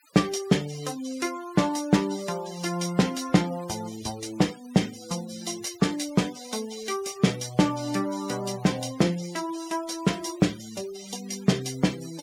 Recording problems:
noise reduction artefacts; signal-to-artefact ratio 18 dB

